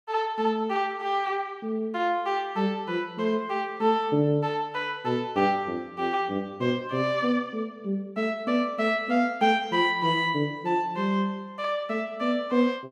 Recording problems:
none

